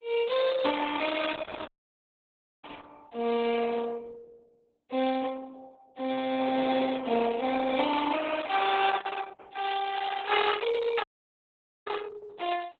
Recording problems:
lossy compression; Opus, then Opus, log-spectral distance 6 dB, nothing above 3.9 kHz
dropout; at 1.5 s for 1 s and at 11 s for 1 s

